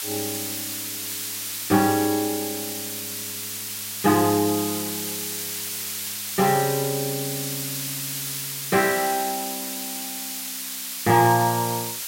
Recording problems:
hiss; slope +4 dB per octave, SNR 5 dB

